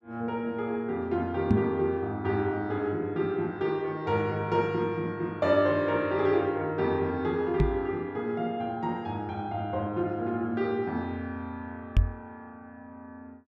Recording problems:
microphone bump; at 1.5 s, at 7.5 s and at 12 s; peak +9 dB vs average level

